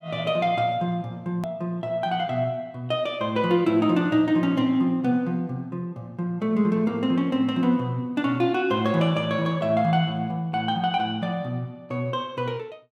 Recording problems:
edit click; at 1.5 s

